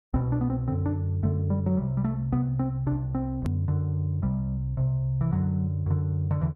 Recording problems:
hard cut with a click; at 3.5 s

